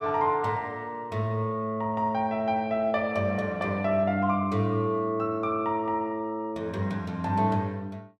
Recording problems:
none

